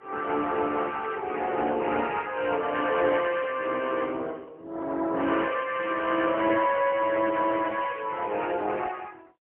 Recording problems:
phone line; 240 Hz to 2.9 kHz, AMR-NB, then MP3

